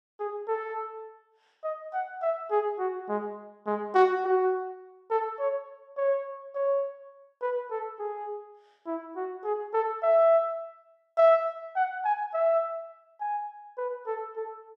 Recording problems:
none

